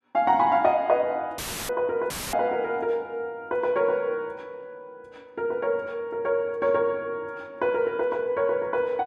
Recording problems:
audio cutting out; at 1.5 s and at 2 s; filled with static

